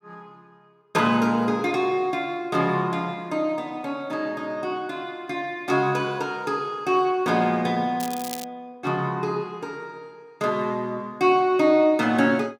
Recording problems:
crackle; at 8 s; loose cable, SNR 13 dB

